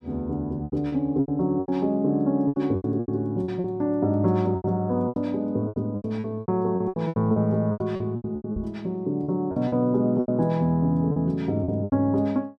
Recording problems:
lost packets; 16% of the sound replaced, filled with repeated pitch periods
knock on the microphone; at 8.5 s; peak -5 dB vs average level

